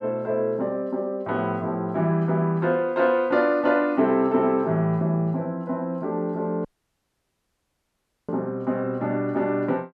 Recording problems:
dropout; at 6.5 s for 1.5 s

